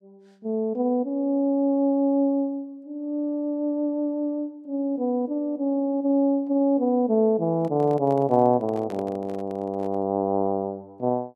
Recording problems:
handling noise; from 7.5 to 10 s; peak -10 dB vs average level

